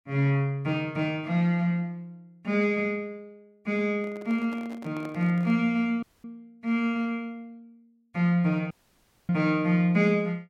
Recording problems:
microphone handling noise; from 4 to 5.5 s; peak -12 dB vs average level
dropout; at 6 s and at 8.5 s for 0.5 s

